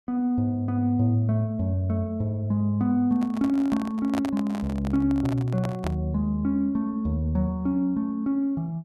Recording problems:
handling noise; from 3 to 6 s; peak -3 dB vs average level

